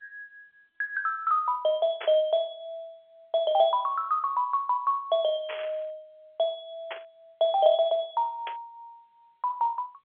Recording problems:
phone line; 340 Hz to 3.4 kHz, G.711
static burst; 4 times, first at 2 s; peak -6 dB vs average level

